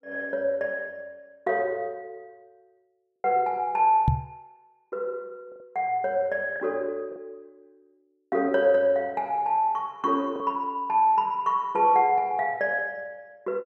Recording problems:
lost packets; 3% of the sound replaced, filled with the last packet
microphone bump; at 4 s; peak +6 dB vs average level

